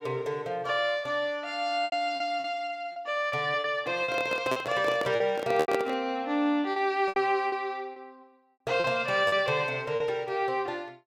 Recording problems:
packet loss; 8% of the sound replaced, filled with repeated pitch periods
microphone handling noise; from 4 to 6 s; peak +2 dB vs average level

